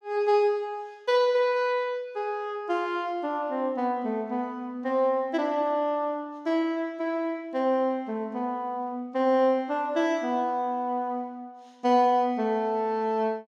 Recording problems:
none

